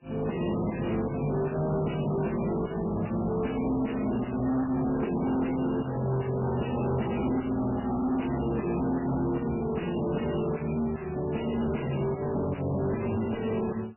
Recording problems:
codec artefacts; MP3, log-spectral distance 7 dB, nothing above 2.9 kHz
distortion; soft clipping, signal-to-distortion ratio 7 dB

